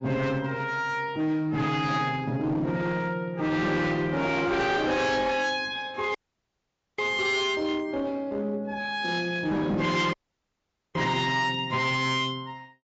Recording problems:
lossy codec; AAC, log-spectral distance 2 dB, nothing above 7.3 kHz
distorted audio; hard clipping, signal-to-distortion ratio 10 dB
dropout; at 6 s for 1 s and at 10 s for 1 s

